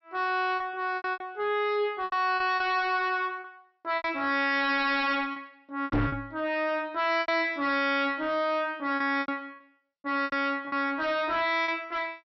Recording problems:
treble missing; nothing above 5.7 kHz
distortion; soft clipping, signal-to-distortion ratio 5 dB
packet loss; 9% of the sound replaced, filled with repeated pitch periods
microphone bump; at 6 s; peak +5 dB vs average level

